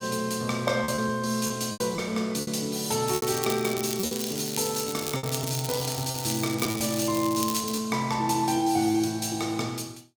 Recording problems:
lost packets; 7% of the sound replaced, filled with repeated pitch periods
crackle; from 3 to 8 s; loose cable, SNR 7 dB

